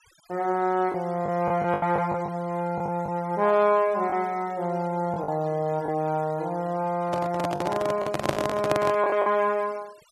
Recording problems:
denoising artefacts; signal-to-artefact ratio 24 dB
lost packets; 6% of the sound replaced, filled with the last packet
microphone handling noise; from 7 to 9 s; peak +5 dB vs average level

